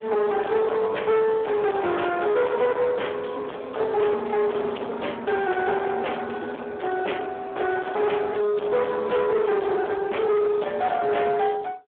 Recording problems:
phone line; 300 Hz to 3.4 kHz, Speex
distortion; soft clipping, signal-to-distortion ratio 8 dB

